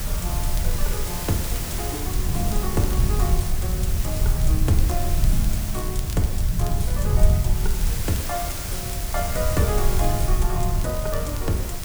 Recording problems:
hiss; slope -2 dB per octave, SNR 2 dB
low-frequency rumble; below 80 Hz, SNR -4 dB
wind on the microphone; below 340 Hz, SNR 14 dB
crackling; vinyl, SNR 14 dB

